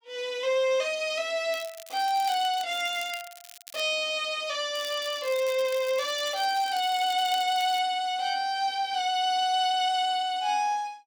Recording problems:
crackle; from 1.5 to 2.5 s, from 2.5 to 4 s and from 5 to 8 s; loose cable, SNR 17 dB

